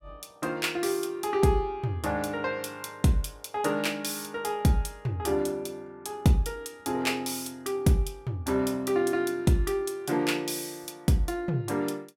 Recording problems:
none

